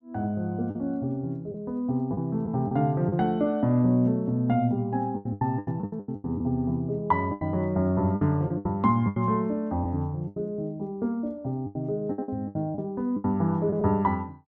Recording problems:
lost packets; 10% of the sound replaced, filled with the last packet

